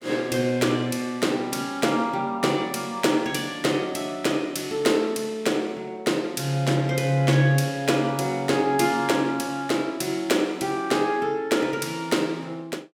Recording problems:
none

